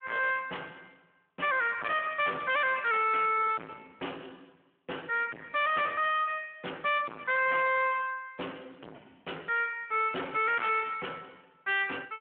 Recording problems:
phone line; 240 Hz to 2.6 kHz, Speex
distorted audio; soft clipping, signal-to-distortion ratio 4 dB

